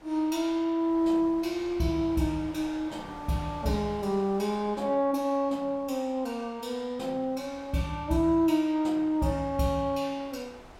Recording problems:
wind noise; below 1.3 kHz, SNR 22 dB

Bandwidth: 16 kHz